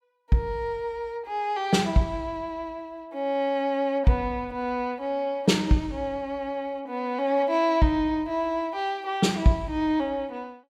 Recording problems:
none

